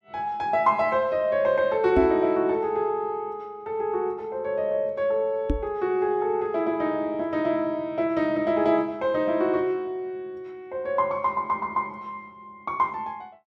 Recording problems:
microphone bump; at 2 s and at 5.5 s; peak +3 dB vs average level

